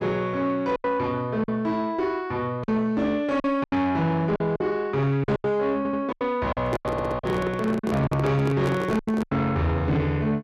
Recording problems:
distorted audio; soft clipping, signal-to-distortion ratio 10 dB
packet loss; 10% of the sound replaced, filled with silence
audio stuttering; at 6 s and at 7 s
handling noise; from 6.5 to 9.5 s; peak +1 dB vs average level

